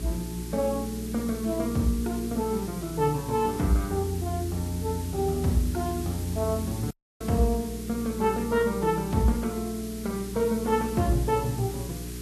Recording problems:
lossy codec; Vorbis, log-spectral distance 6 dB, nothing above 13.1 kHz
electrical hum; 60 Hz, harmonics up to 420 Hz, SNR 10 dB
hiss; SNR 14 dB
audio cutting out; at 7 s

